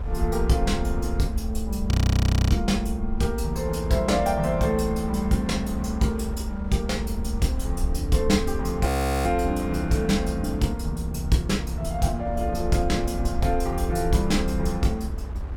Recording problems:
low-frequency rumble; below 70 Hz, SNR 6 dB
wind noise; below 610 Hz, SNR 16 dB
frozen audio; at 2 s for 0.5 s and at 9 s

